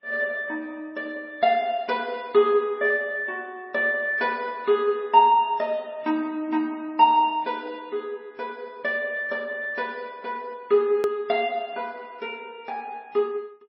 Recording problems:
codec artefacts; MP3, log-spectral distance 2 dB, nothing above 19.5 kHz
hard cut with a click; at 11 s

